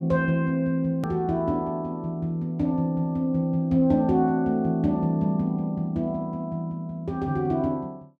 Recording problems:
click at an edit; at 1 s

